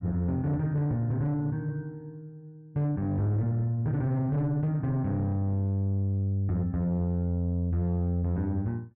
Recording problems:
distortion; soft clipping, signal-to-distortion ratio 11 dB

